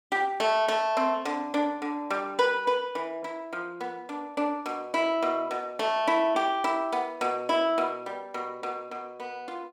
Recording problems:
none

